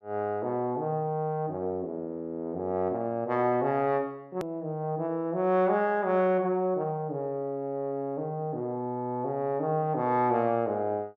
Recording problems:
edit click; at 4.5 s

